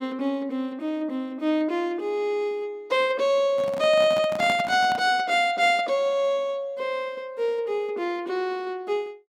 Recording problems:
handling noise; from 3.5 to 5 s; peak -4 dB vs average level

